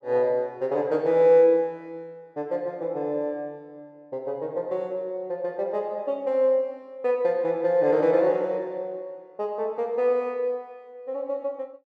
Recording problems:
none

